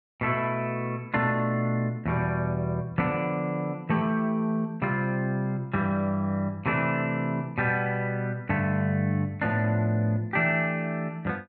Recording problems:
none

